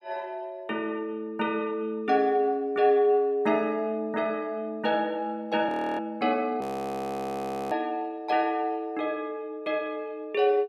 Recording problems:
frozen audio; at 5.5 s and at 6.5 s for 1 s

